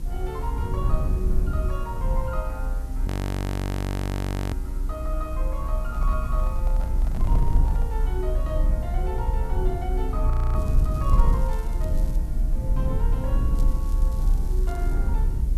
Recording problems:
background hiss; slope -2 dB per octave, SNR 16 dB
rumble; below 58 Hz, strongest tone 32 Hz, SNR -9 dB
audio freezing; at 3 s for 1.5 s and at 10 s
microphone handling noise; from 6 to 8 s; peak -3 dB vs average level
crackle; from 11 to 12 s and from 14 to 15 s; loose cable, SNR 16 dB

